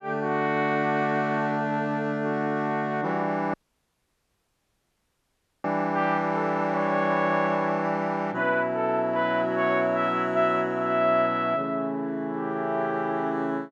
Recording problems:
dropout; at 3.5 s for 2 s

